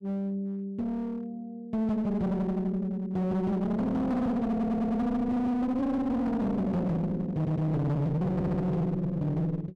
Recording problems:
distorted audio; hard clipping, uneven, signal-to-distortion ratio 6 dB
audio stuttering; at 4.5 s, at 7.5 s and at 8.5 s

